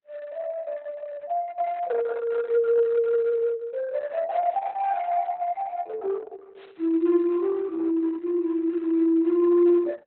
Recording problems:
lossy codec; Opus, log-spectral distance 2 dB, nothing above 4 kHz

